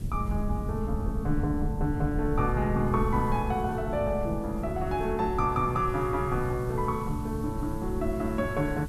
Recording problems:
background hiss; slope 0 dB per octave, SNR 25 dB
rumble; below 120 Hz, SNR 6 dB

